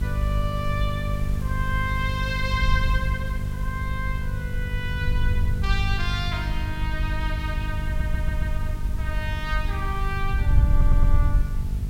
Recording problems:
hum; 50 Hz, harmonics up to 650 Hz, SNR 0 dB
hiss; slope -1 dB per octave, SNR 17 dB
wind on the microphone; below 72 Hz, SNR -4 dB
audio stuttering; at 8 s and at 11 s

